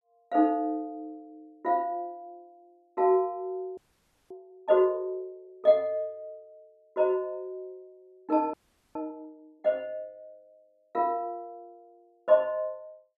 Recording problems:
frozen audio; at 4 s for 0.5 s and at 8.5 s

